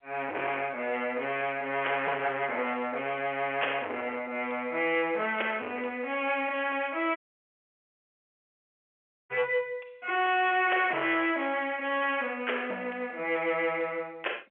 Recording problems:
phone line; 340 Hz to 3.2 kHz, G.711
distorted audio; soft clipping, signal-to-distortion ratio 9 dB
dropout; at 7 s for 2 s

